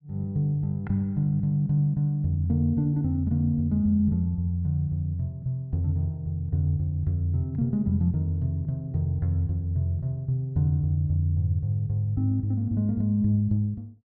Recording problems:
none

